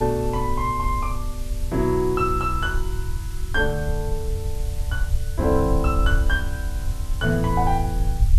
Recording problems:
background hiss; slope +3 dB per octave, SNR 18 dB
rumble; below 70 Hz, SNR 3 dB

